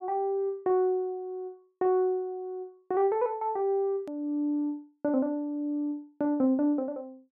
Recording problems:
hard cut with a click; at 4 s

